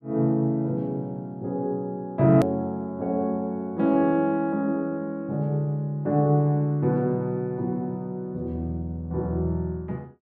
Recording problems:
click at an edit; at 2.5 s

